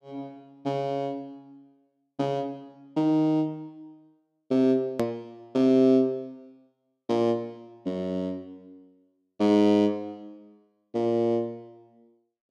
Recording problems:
edit click; at 5 s

